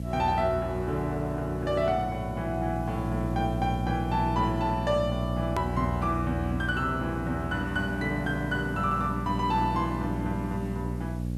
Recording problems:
hum; 60 Hz, harmonics up to 600 Hz, SNR 4 dB
hiss; slope +2 dB per octave, SNR 27 dB
edit click; at 5.5 s

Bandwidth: 13 kHz